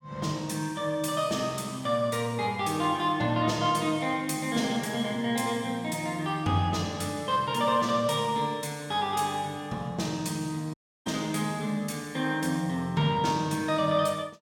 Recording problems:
audio cutting out; at 11 s

